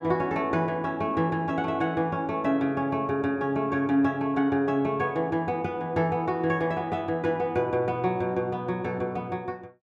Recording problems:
none

